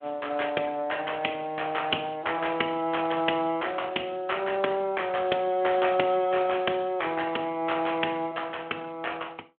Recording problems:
phone line; 240 Hz to 3.4 kHz, Speex

